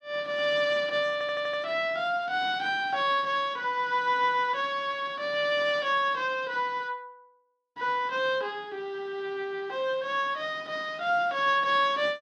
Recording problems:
audio stuttering; at 1 s

